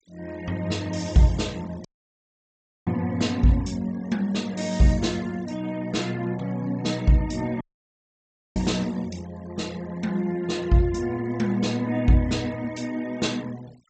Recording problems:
treble cut off; nothing above 8 kHz
denoising artefacts; signal-to-artefact ratio 23 dB
dropout; at 2 s for 1 s and at 7.5 s for 1 s

